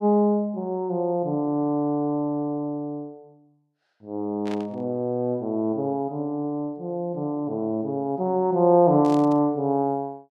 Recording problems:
burst of static; at 4.5 s and at 9 s; peak -12 dB vs average level

